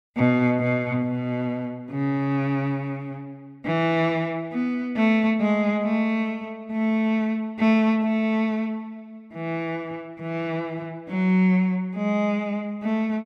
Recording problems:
none

